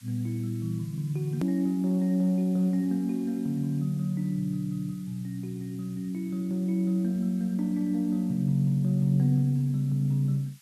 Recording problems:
background hiss; SNR 27 dB
click at an edit; at 1.5 s

